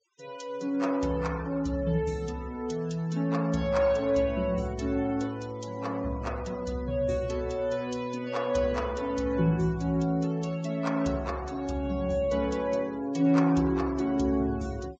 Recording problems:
treble cut off; nothing above 8 kHz
noise reduction artefacts; signal-to-artefact ratio 23 dB

